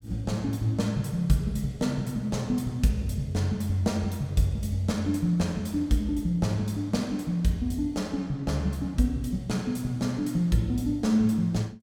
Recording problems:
none

